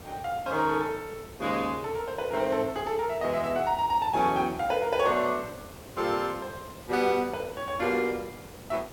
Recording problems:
background hiss; slope -6 dB per octave, SNR 17 dB

